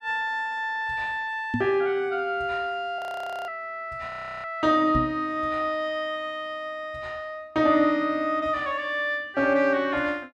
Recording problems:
microphone thump; at 1.5 s and at 5 s; peak +2 dB vs average level
audio freezing; at 3 s and at 4 s

